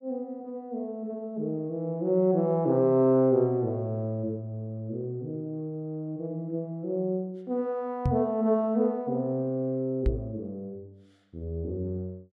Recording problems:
microphone bump; at 8 s and at 10 s; peak +5 dB vs average level

